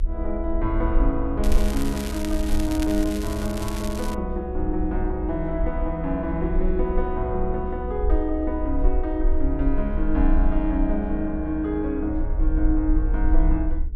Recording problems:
electrical hum; 50 Hz, harmonics up to 450 Hz, SNR 22 dB
rumble; below 50 Hz, SNR 2 dB
crackling; from 1.5 to 4 s; loose cable, SNR 11 dB

